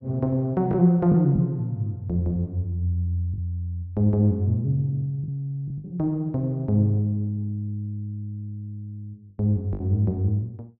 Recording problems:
packet loss; 3% of the sound replaced, filled with the last packet

